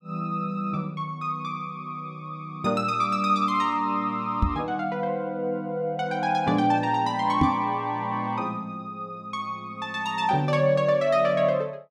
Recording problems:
microphone bump; at 4.5 s and at 7.5 s; peak +7 dB vs average level

